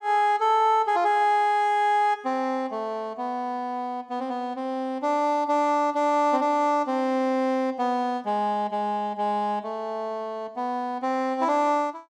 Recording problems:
none

